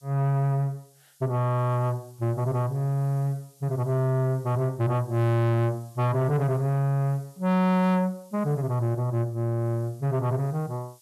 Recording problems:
distorted audio; soft clipping, signal-to-distortion ratio 8 dB
background hiss; SNR 30 dB

